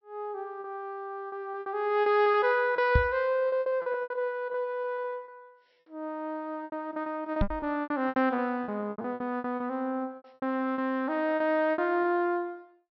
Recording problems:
treble cut off; nothing above 5.5 kHz
lost packets; 15% of the sound replaced, filled with repeated pitch periods
knock on the microphone; at 3 s and at 7.5 s; peak +8 dB vs average level

